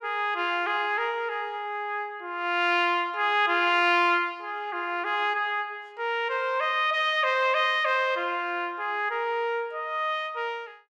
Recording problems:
none

